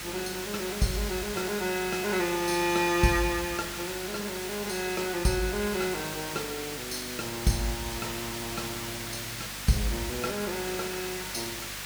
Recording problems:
electrical hum; 50 Hz, harmonics up to 300 Hz, SNR 19 dB
background hiss; slope +1 dB per octave, SNR 5 dB

